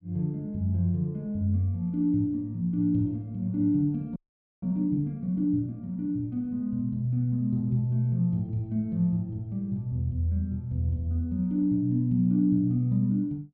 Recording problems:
frozen audio; at 4 s

